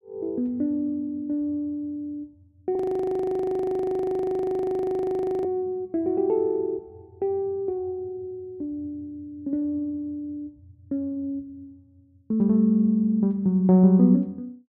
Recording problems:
audio freezing; at 3 s for 2.5 s

